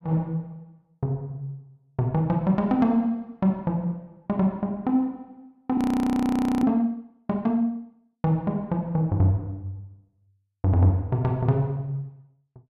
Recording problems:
audio freezing; at 6 s for 1 s

